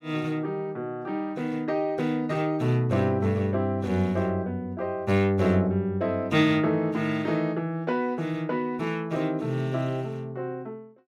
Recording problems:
none

